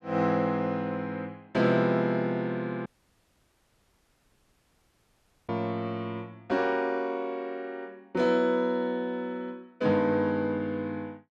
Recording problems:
dropout; at 3 s for 2.5 s

